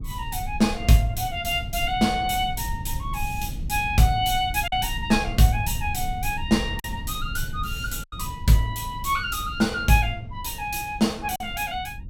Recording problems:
low-frequency rumble; below 100 Hz, SNR 11 dB
lost packets; 1.7% of the sound replaced, filled with silence

